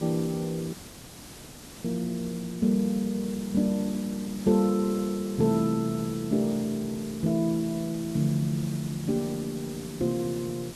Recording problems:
hiss; SNR 14 dB
audio cutting out; at 0.5 s for 1 s

